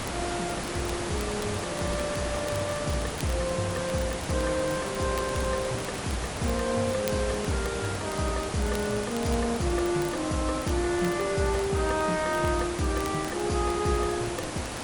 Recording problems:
lossy codec; MP3, log-spectral distance 7 dB
distortion; soft clipping, signal-to-distortion ratio 2 dB
hiss; SNR 5 dB
crackling; vinyl, SNR 23 dB

